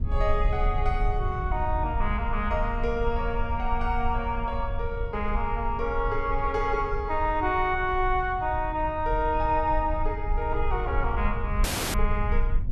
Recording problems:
rumble; below 62 Hz, SNR 4 dB
dropout; at 12 s

